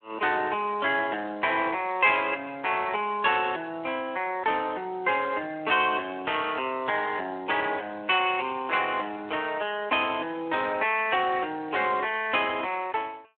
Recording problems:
telephone audio; 280 Hz to 3.7 kHz, Speex

